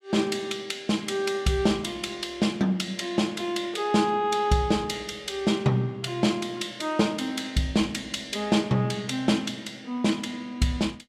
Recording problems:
none

